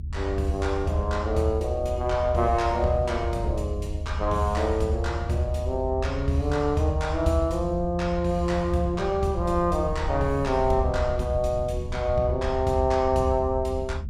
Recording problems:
rumble; below 80 Hz, SNR 6 dB

